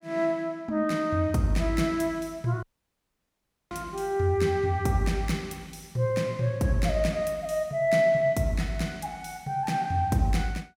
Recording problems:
dropout; at 2.5 s for 1 s

